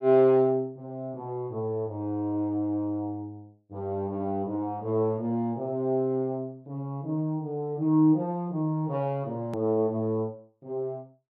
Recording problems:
click at an edit; at 9.5 s

